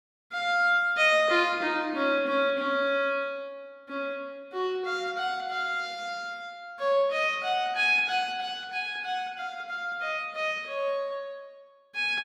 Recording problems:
none

